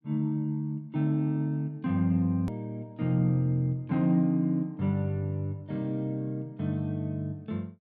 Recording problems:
edit click; at 2.5 s

